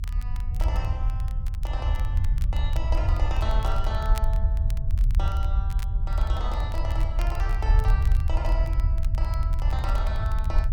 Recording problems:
rumble; below 70 Hz, SNR -10 dB
crackling; vinyl, SNR 14 dB

